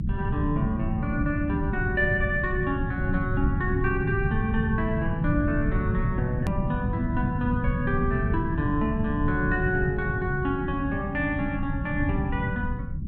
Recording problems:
low-frequency rumble; below 170 Hz, SNR 1 dB
hard cut with a click; at 6.5 s

